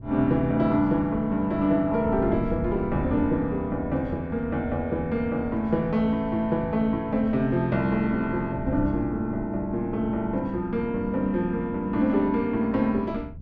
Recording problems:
wind on the microphone; below 140 Hz, SNR 14 dB

